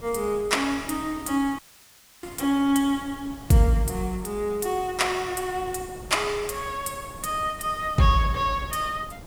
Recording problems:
hiss; slope +1 dB per octave, SNR 24 dB
wind on the microphone; below 390 Hz, SNR 19 dB
audio cutting out; at 1.5 s for 0.5 s

